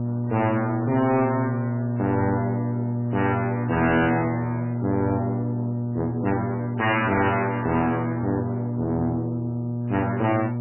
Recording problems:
lossy compression; MP3, log-spectral distance 2 dB, nothing above 3 kHz
distorted audio; soft clipping, signal-to-distortion ratio 6 dB
hum; 60 Hz, harmonics up to 960 Hz, SNR 2 dB

